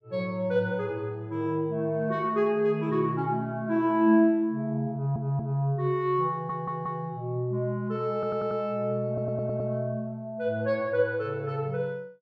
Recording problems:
audio stuttering; 4 times, first at 5 s

